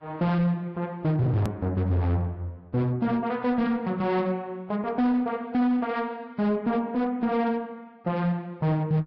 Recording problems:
lossy codec; Vorbis, log-spectral distance 2 dB, nothing above 13.1 kHz
distorted audio; hard clipping, signal-to-distortion ratio 11 dB
click at an edit; at 1.5 s

